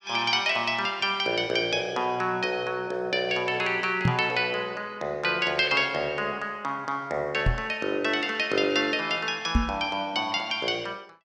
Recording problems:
knock on the microphone; at 4 s, at 7.5 s and at 9.5 s; peak +6 dB vs average level

